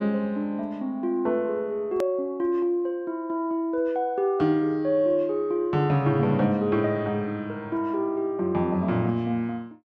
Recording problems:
hard cut with a click; at 2 s

